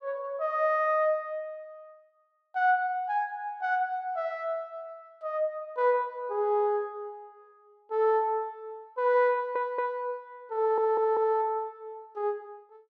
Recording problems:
audio stuttering; at 9.5 s and at 11 s

